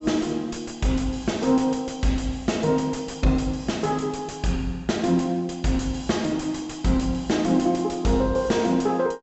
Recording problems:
treble missing; nothing above 7.8 kHz
distorted audio; soft clipping, signal-to-distortion ratio 10 dB

